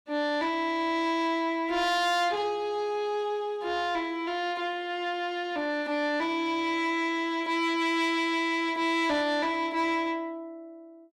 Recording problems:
distortion; soft clipping, signal-to-distortion ratio 11 dB

